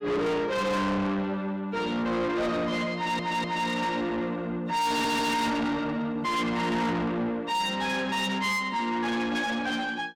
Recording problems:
distortion; soft clipping, signal-to-distortion ratio 7 dB
audio stuttering; at 3 s and at 5 s

